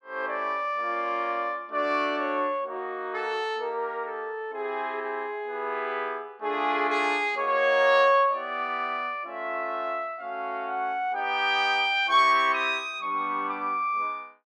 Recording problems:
none

